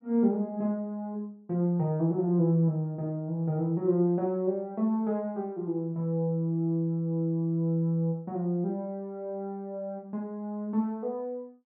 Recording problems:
none

